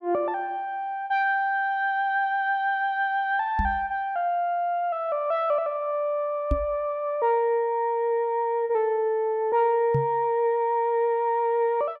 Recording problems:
knock on the microphone; at 3.5 s, at 6.5 s and at 10 s; peak +3 dB vs average level

